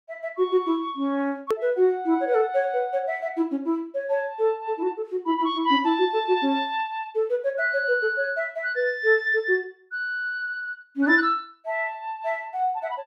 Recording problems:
hard cut with a click; at 1.5 s

